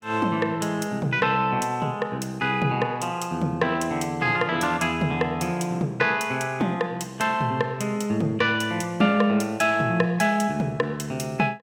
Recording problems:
none

